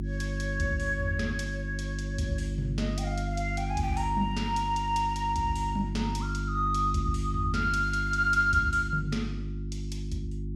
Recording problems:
electrical hum; 50 Hz, harmonics up to 350 Hz, SNR 4 dB

